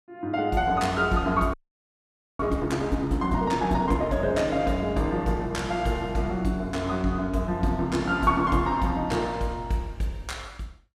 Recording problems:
audio freezing; at 1.5 s for 1 s

